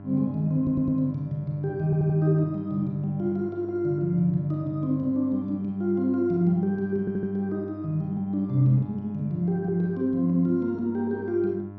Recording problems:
hum; 50 Hz, harmonics up to 1.1 kHz, SNR 15 dB
stutter; at 0.5 s, at 2 s and at 7 s

